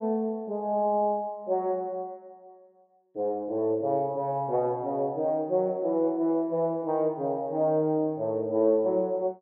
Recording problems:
none

